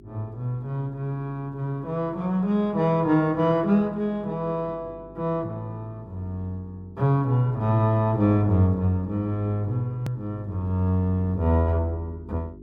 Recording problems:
electrical hum; 50 Hz, harmonics up to 400 Hz, SNR 22 dB
click at an edit; at 10 s

